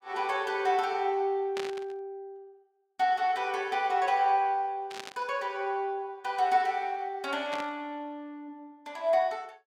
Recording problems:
static burst; at 1.5 s, at 5 s and at 7.5 s; peak -5 dB vs average level

